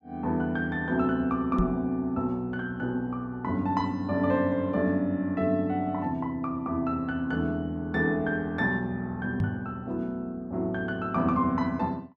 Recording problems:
microphone bump; at 1.5 s and at 9.5 s; peak +4 dB vs average level

